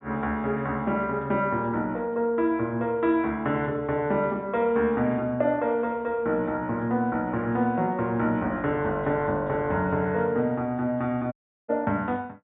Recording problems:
treble missing; nothing above 4 kHz
audio cutting out; at 11 s

